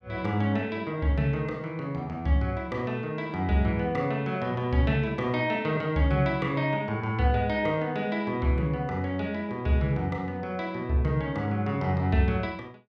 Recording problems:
none

